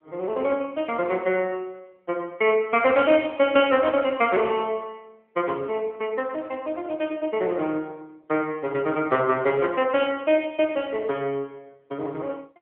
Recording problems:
telephone audio; 170 Hz to 3.3 kHz, AMR-NB

